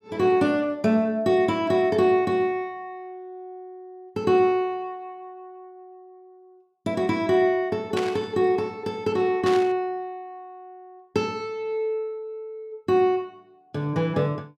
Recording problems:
burst of static; at 8 s and at 9.5 s; peak -3 dB vs average level

